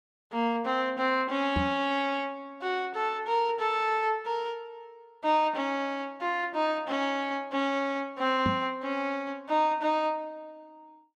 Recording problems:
microphone thump; at 1.5 s and at 8.5 s; peak +4 dB vs average level

